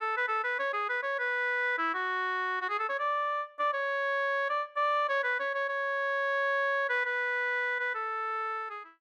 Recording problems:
none

